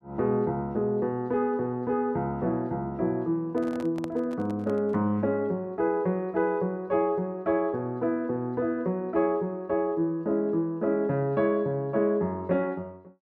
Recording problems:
handling noise; from 3.5 to 5 s; peak -7 dB vs average level

